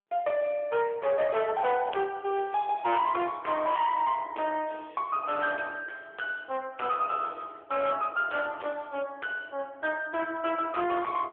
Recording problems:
telephone audio; 320 Hz to 3.5 kHz, AMR-NB
distorted audio; hard clipping, signal-to-distortion ratio 10 dB

